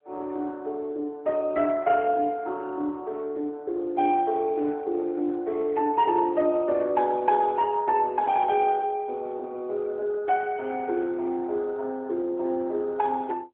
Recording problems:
telephone audio; 260 Hz to 3.4 kHz, AMR-NB

